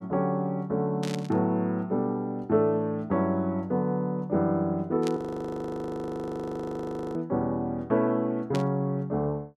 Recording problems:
burst of static; at 1 s, at 5 s and at 8.5 s; peak -5 dB vs average level
audio freezing; at 5 s for 2 s

